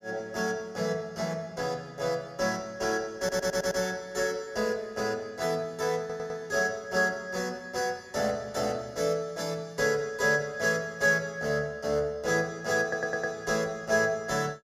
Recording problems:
stutter; at 3 s, at 6 s and at 13 s

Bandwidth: 13.5 kHz